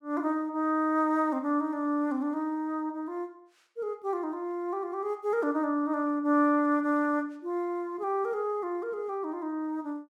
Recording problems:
none

